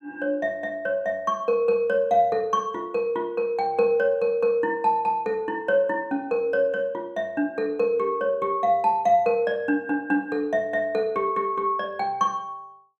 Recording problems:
none

